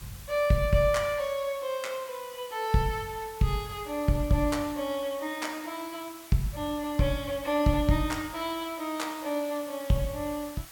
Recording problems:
hiss; slope 0 dB per octave, SNR 17 dB

